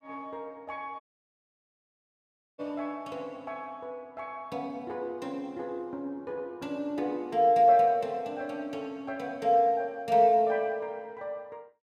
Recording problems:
dropout; at 1 s for 1.5 s

